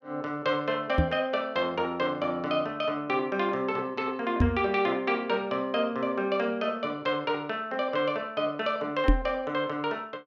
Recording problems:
microphone bump; at 1 s, at 4.5 s and at 9 s; peak +9 dB vs average level

